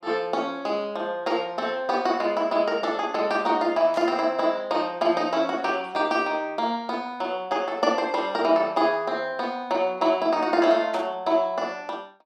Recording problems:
burst of static; at 4 s and at 11 s; peak -10 dB vs average level

